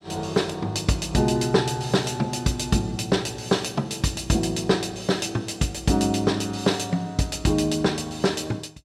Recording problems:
none

